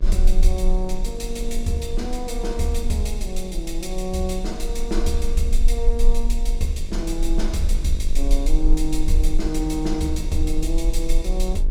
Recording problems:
hum; 50 Hz, harmonics up to 1.1 kHz, SNR 14 dB
low-frequency rumble; below 36 Hz, strongest tone 22 Hz, SNR -1 dB

